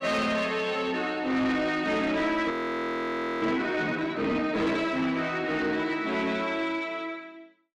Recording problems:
distorted audio; soft clipping, signal-to-distortion ratio 11 dB
frozen audio; at 2.5 s for 1 s

